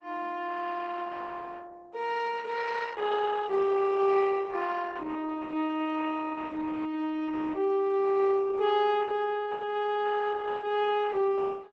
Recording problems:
codec artefacts; Opus, log-spectral distance 4 dB, nothing above 7.8 kHz

